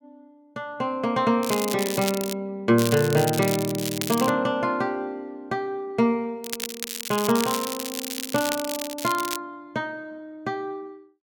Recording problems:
crackling; at 1.5 s, from 3 to 4.5 s and from 6.5 to 9.5 s; loose cable, SNR 6 dB

